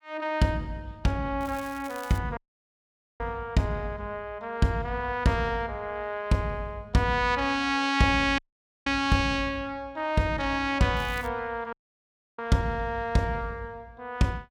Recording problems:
crackling; at 1.5 s and at 11 s; loose cable, SNR 20 dB
dropout; at 2.5 s for 1 s, at 8.5 s and at 12 s for 0.5 s

